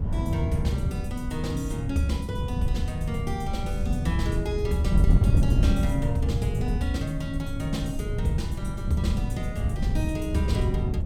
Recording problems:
wind noise; below 130 Hz, SNR -3 dB

